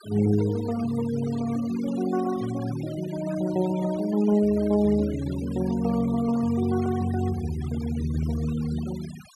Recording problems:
noise reduction artefacts; signal-to-artefact ratio 18 dB

